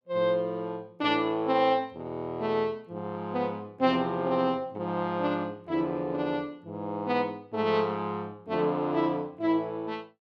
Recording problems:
none

